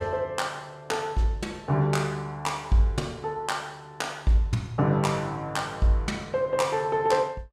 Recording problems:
none

